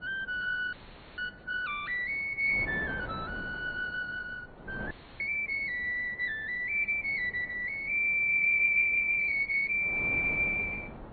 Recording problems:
treble missing; nothing above 4 kHz
lossy compression; Opus, then MP3, log-spectral distance 2 dB
wind noise; below 650 Hz, SNR 19 dB
audio cutting out; at 0.5 s and at 5 s

